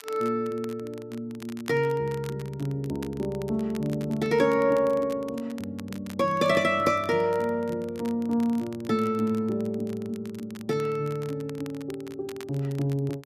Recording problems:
crackling; vinyl, SNR 22 dB

